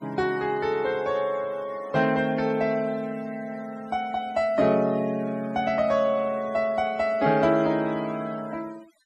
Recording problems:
denoising artefacts; signal-to-artefact ratio 23 dB

